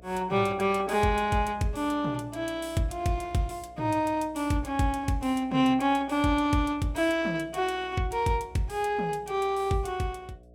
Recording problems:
hum; 60 Hz, harmonics up to 720 Hz, SNR 25 dB

